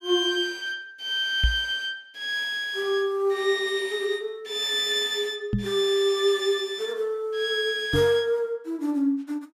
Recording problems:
knock on the microphone; at 1.5 s, at 5.5 s and at 8 s; peak +5 dB vs average level

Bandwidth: 15.5 kHz